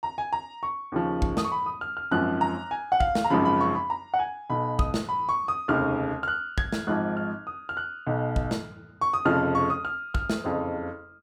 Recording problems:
none

